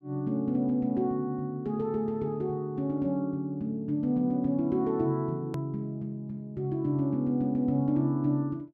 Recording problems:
click at an edit; at 5.5 s

